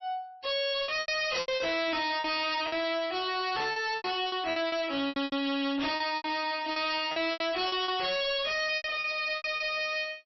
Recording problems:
codec artefacts; MP3, log-spectral distance 5 dB, nothing above 5.7 kHz
distorted audio; hard clipping, signal-to-distortion ratio 7 dB
packet loss; 13% of the sound replaced, filled with repeated pitch periods

